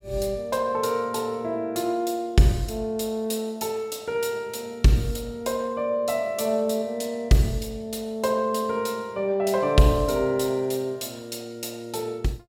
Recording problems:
none

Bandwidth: 17 kHz